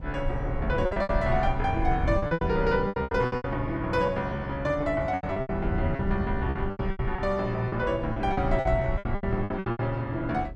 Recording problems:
rumble; below 90 Hz, SNR 7 dB
wind on the microphone; below 230 Hz, SNR 14 dB
lost packets; 16% of the sound replaced, filled with repeated pitch periods

